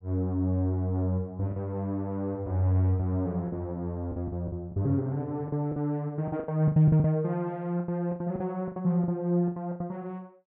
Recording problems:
packet loss; 11% of the sound replaced, filled with the last packet

